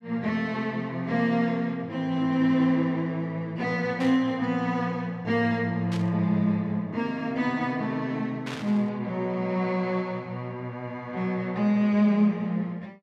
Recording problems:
static burst; at 4 s, at 6 s and at 8.5 s; peak -7 dB vs average level

